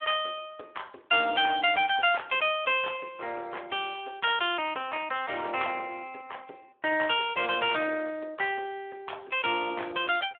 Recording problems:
phone line; 300 Hz to 3.4 kHz, Speex

